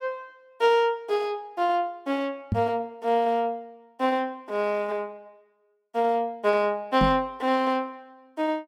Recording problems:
microphone thump; at 2.5 s and at 7 s; peak +3 dB vs average level

